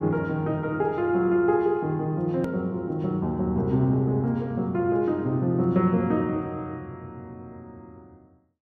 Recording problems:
edit click; at 2.5 s

